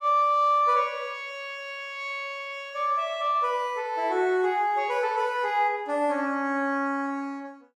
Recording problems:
none

